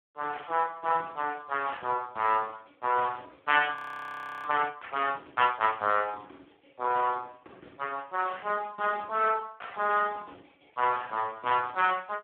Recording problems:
telephone audio; 320 Hz to 2.9 kHz, Speex
audio freezing; at 4 s for 0.5 s

